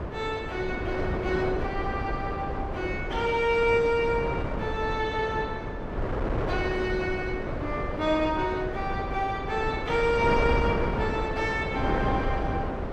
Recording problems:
wind noise; below 590 Hz, SNR 3 dB

